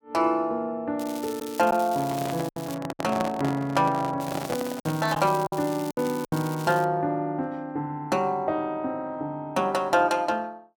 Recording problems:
packet loss; 4% of the sound replaced, filled with silence
crackling; from 1 to 2.5 s and from 4 to 7 s; loose cable, SNR 15 dB
microphone handling noise; from 2 to 5 s; peak +1 dB vs average level

